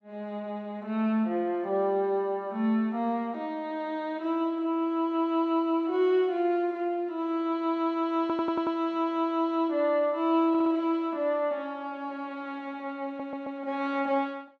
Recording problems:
stutter; at 8 s, at 10 s and at 13 s

